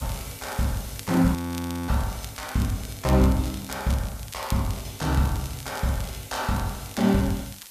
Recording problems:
background hiss; slope +2 dB per octave, SNR 16 dB
crackling; vinyl, SNR 17 dB
audio freezing; at 1.5 s for 0.5 s

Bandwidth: 14.5 kHz